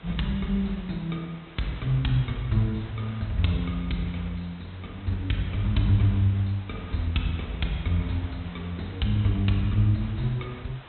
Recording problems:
low-pass filter; nothing above 4 kHz
background hiss; SNR 19 dB

